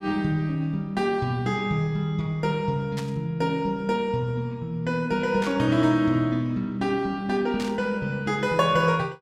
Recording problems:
static burst; at 3 s, at 5.5 s and at 7.5 s; peak -7 dB vs average level

